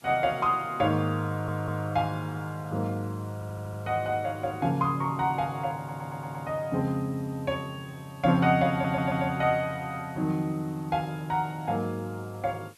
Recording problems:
background hiss; SNR 27 dB
stutter; 4 times, first at 1.5 s

